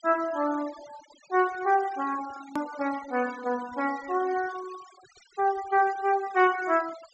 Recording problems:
treble missing; nothing above 8 kHz
denoising artefacts; signal-to-artefact ratio 19 dB
click at an edit; at 2.5 s

